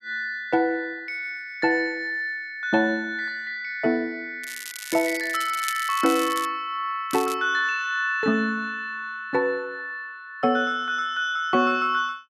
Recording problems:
crackling; from 4.5 to 6.5 s and at 7 s; loose cable, SNR 11 dB

